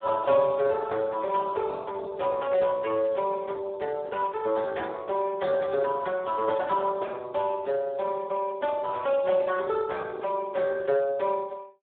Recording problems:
phone line; 340 Hz to 2 kHz, Speex

